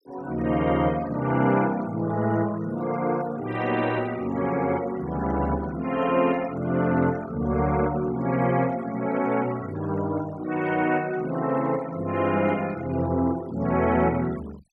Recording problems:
noise reduction artefacts; signal-to-artefact ratio 19 dB

